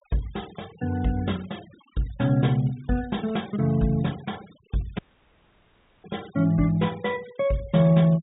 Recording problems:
treble cut off; nothing above 4 kHz
noise reduction artefacts; signal-to-artefact ratio 23 dB
audio cutting out; at 5 s for 1 s

